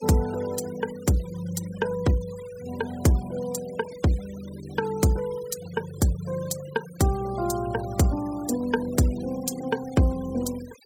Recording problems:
noise reduction artefacts; signal-to-artefact ratio 19 dB

